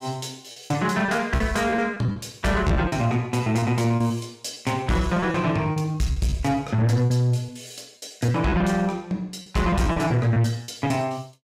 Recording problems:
distorted audio; soft clipping, signal-to-distortion ratio 12 dB
packet loss; 11% of the sound replaced, filled with repeated pitch periods

